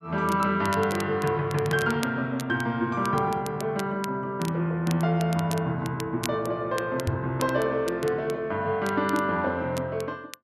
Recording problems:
crackle; vinyl, SNR 16 dB
knock on the microphone; at 7 s; peak +2 dB vs average level

